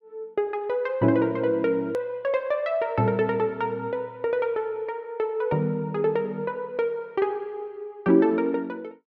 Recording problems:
hard cut with a click; at 2 s

